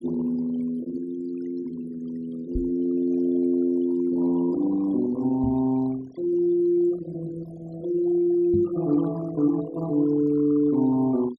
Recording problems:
denoising artefacts; signal-to-artefact ratio 20 dB
microphone thump; at 2.5 s, at 5.5 s and at 8.5 s; peak 0 dB vs average level

